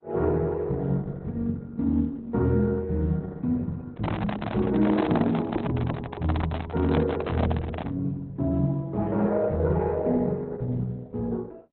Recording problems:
lossy codec; Opus, log-spectral distance 3 dB, nothing above 3.8 kHz
microphone handling noise; from 4 to 8 s; peak +2 dB vs average level

